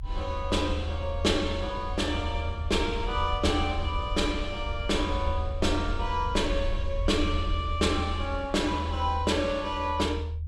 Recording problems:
low-frequency rumble; below 80 Hz, SNR 5 dB

